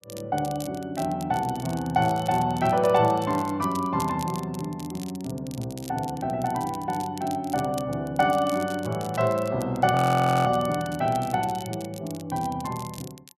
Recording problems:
crackling; vinyl, SNR 18 dB
audio freezing; at 10 s for 0.5 s

